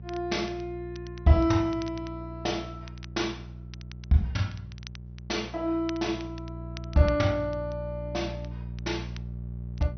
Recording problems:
low-pass filter; nothing above 6 kHz
hum; 60 Hz, harmonics up to 420 Hz, SNR 11 dB
crackle; vinyl, SNR 22 dB

